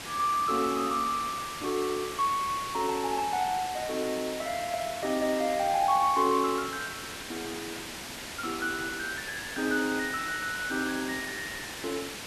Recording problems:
background hiss; slope -1 dB per octave, SNR 8 dB

